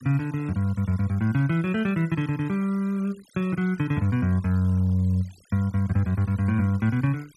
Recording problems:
noise reduction artefacts; signal-to-artefact ratio 26 dB

